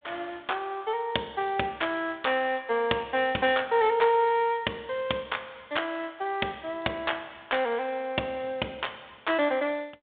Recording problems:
telephone audio; 260 Hz to 3.6 kHz, G.726

